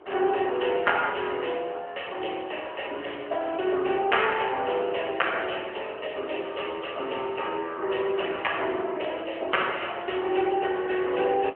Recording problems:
telephone audio; 300 Hz to 3.2 kHz, AMR-NB
wind noise; below 940 Hz, SNR 21 dB

